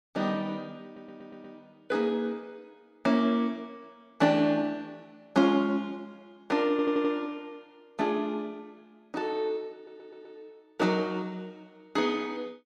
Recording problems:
audio stuttering; at 1 s, at 6.5 s and at 10 s

